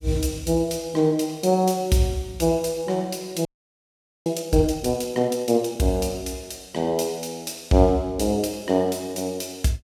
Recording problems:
audio freezing; at 3.5 s for 1 s

